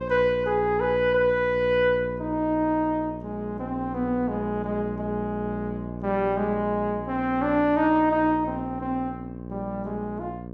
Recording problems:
hum; 60 Hz, harmonics up to 1 kHz, SNR 10 dB

